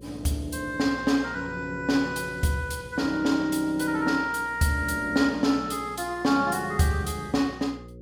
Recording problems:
electrical hum; 60 Hz, harmonics up to 540 Hz, SNR 20 dB

